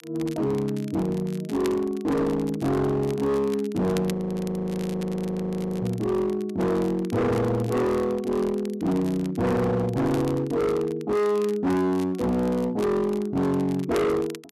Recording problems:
distortion; hard clipping, uneven, signal-to-distortion ratio 7 dB
crackle; vinyl, SNR 21 dB
frozen audio; at 4 s for 1.5 s

